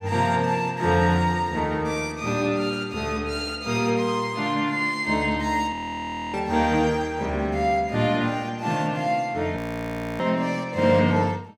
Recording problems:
audio freezing; at 5.5 s for 0.5 s and at 9.5 s for 0.5 s

